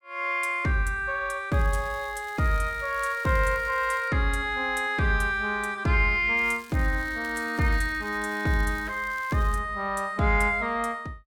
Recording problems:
crackling; from 1.5 to 4 s and from 6.5 to 9.5 s; loose cable, SNR 24 dB

